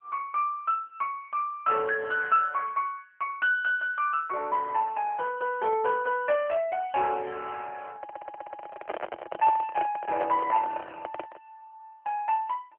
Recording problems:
phone line; 300 Hz to 3 kHz, AMR-NB
handling noise; from 8 to 11 s; peak -1 dB vs average level
audio stuttering; at 8 s

